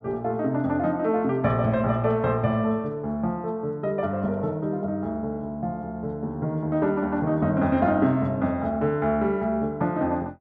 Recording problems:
none

